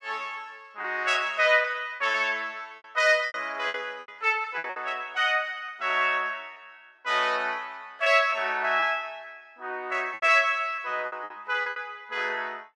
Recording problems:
lost packets; 8% of the sound replaced, filled with repeated pitch periods

